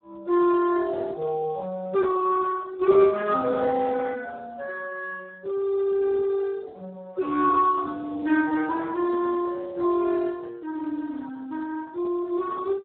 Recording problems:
phone line; 220 Hz to 2 kHz, Speex

